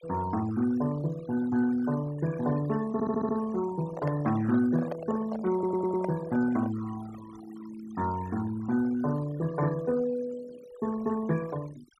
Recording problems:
noise reduction artefacts; signal-to-artefact ratio 17 dB
stutter; at 3 s and at 5.5 s
handling noise; from 4 to 7 s; peak -2 dB vs average level

